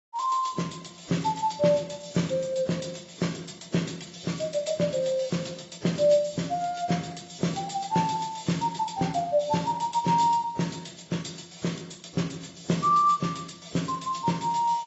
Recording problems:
codec artefacts; AAC, log-spectral distance 7 dB, nothing above 7.6 kHz

